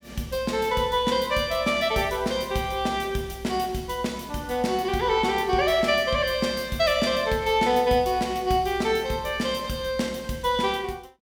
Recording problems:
none

